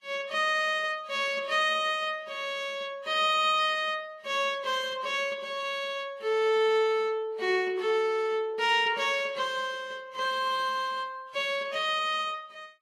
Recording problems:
lossy codec; Vorbis, log-spectral distance 2 dB, nothing above 12.3 kHz

